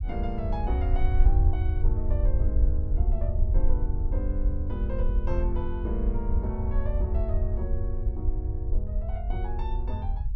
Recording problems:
low-frequency rumble; below 68 Hz, SNR -8 dB

